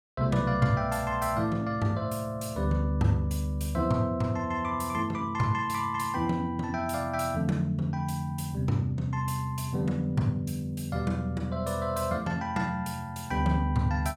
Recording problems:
none

